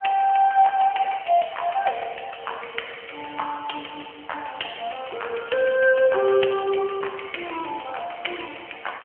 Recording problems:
telephone audio; 340 Hz to 3.2 kHz, AMR-NB

